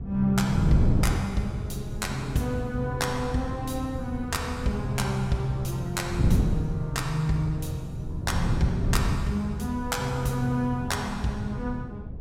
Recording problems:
wind on the microphone; below 170 Hz, SNR 3 dB

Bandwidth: 16 kHz